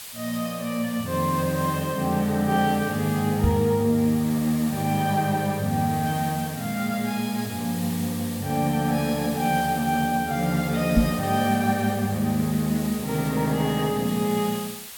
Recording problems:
background hiss; slope +2 dB per octave, SNR 13 dB
microphone bump; at 3.5 s and at 11 s; peak +7 dB vs average level

